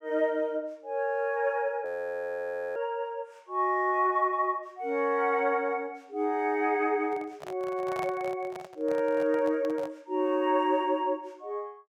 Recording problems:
audio freezing; at 2 s for 1 s
handling noise; from 7 to 10 s; peak -5 dB vs average level

